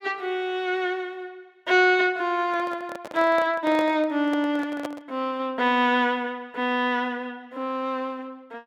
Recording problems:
handling noise; from 2.5 to 5 s; peak -4 dB vs average level

